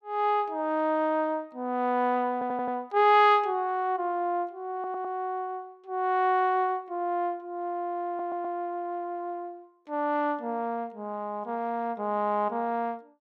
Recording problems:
audio stuttering; at 2.5 s, at 4.5 s and at 8 s

